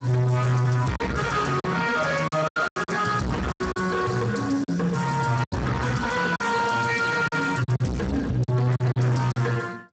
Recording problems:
codec artefacts; Speex, log-spectral distance 5 dB, nothing above 7.8 kHz
distorted audio; soft clipping, signal-to-distortion ratio 6 dB
packet loss; 9% of the sound replaced, filled with silence

